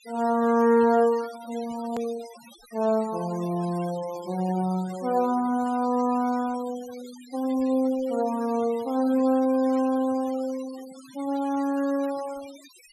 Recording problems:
noise reduction artefacts; signal-to-artefact ratio 20 dB
hard cut with a click; at 2 s

